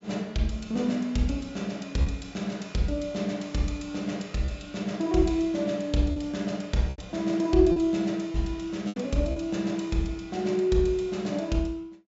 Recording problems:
treble missing; nothing above 8 kHz
packet loss; 3% of the sound replaced, filled with repeated pitch periods

